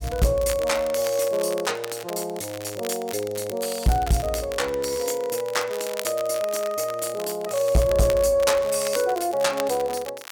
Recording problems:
distortion; soft clipping, signal-to-distortion ratio 12 dB
crackling; vinyl, SNR 14 dB

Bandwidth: 18 kHz